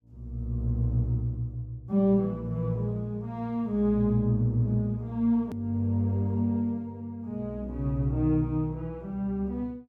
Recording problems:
click at an edit; at 5.5 s

